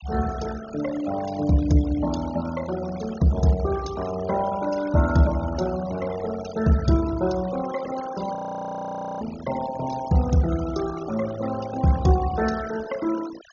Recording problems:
treble cut off; nothing above 6.7 kHz
noise reduction artefacts; signal-to-artefact ratio 15 dB
frozen audio; at 8.5 s for 1 s

